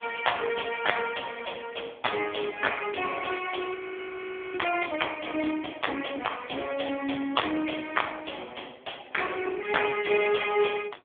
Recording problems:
telephone audio; 240 Hz to 3.5 kHz, AMR-NB
frozen audio; at 3.5 s for 1 s

